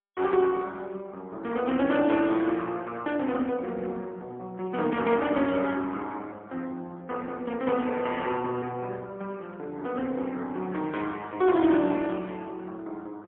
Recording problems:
phone line; 240 Hz to 3.4 kHz, AMR-NB, then MP3

